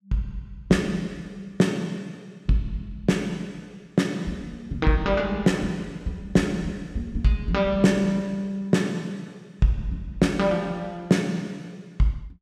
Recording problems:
none

